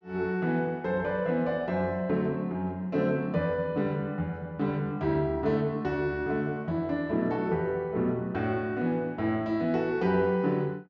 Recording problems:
treble missing; nothing above 8 kHz

